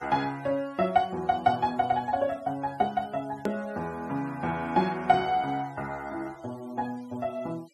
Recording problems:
denoising artefacts; signal-to-artefact ratio 25 dB
click at an edit; at 3.5 s

